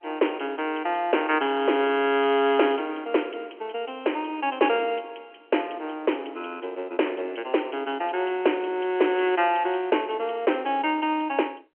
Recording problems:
phone line; 280 Hz to 3.1 kHz, G.711

